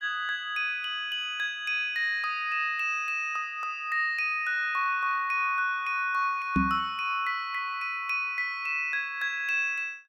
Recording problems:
microphone thump; at 6.5 s; peak +5 dB vs average level

